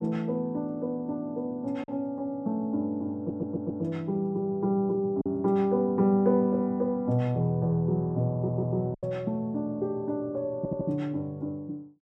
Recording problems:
lost packets; 1.5% of the sound replaced, filled with silence
stutter; at 3 s, at 8.5 s and at 11 s

